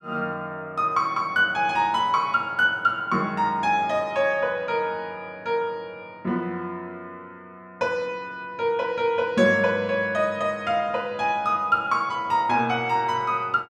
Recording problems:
none

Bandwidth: 13 kHz